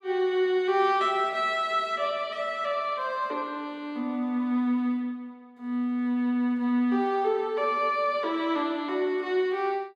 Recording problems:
none

